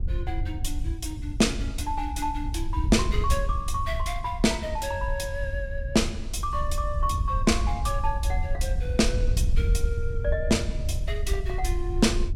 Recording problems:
wind noise; below 72 Hz, SNR 1 dB

